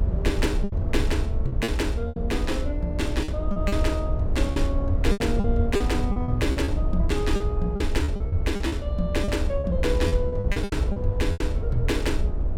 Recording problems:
mains hum; 60 Hz, harmonics up to 660 Hz, SNR 12 dB
low-frequency rumble; below 78 Hz, SNR -1 dB
lost packets; 12% of the sound replaced, filled with repeated pitch periods

